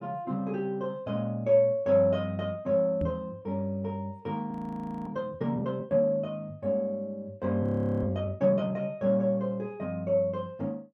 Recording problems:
microphone thump; at 3 s; peak +1 dB vs average level
audio freezing; at 4.5 s for 0.5 s and at 7.5 s

